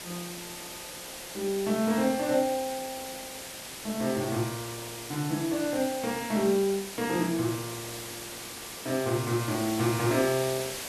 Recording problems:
hiss; slope -1 dB per octave, SNR 9 dB

